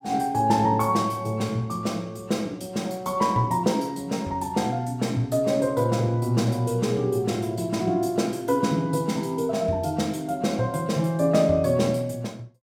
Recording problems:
none

